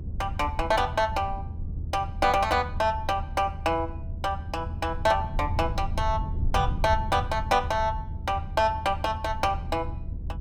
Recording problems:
low-frequency rumble; below 96 Hz, SNR 7 dB

